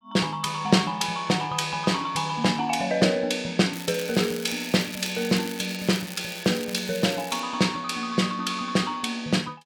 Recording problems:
crackle; from 3.5 to 7.5 s; loose cable, SNR 13 dB

